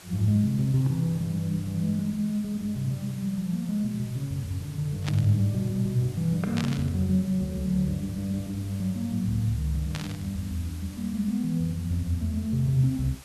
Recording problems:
background hiss; slope -1 dB per octave, SNR 20 dB
static burst; at 5 s, at 6.5 s and at 10 s; peak -3 dB vs average level

